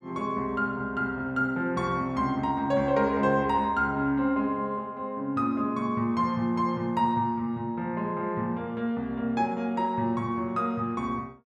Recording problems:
none

